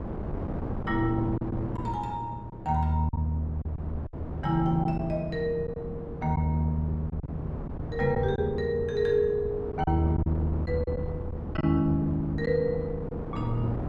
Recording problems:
wind on the microphone; below 350 Hz, SNR 8 dB
packet loss; 5% of the sound replaced, filled with silence

